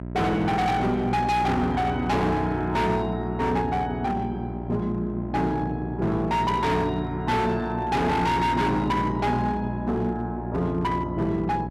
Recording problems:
distortion; hard clipping, uneven, signal-to-distortion ratio 7 dB
electrical hum; 60 Hz, harmonics up to 1 kHz, SNR 8 dB

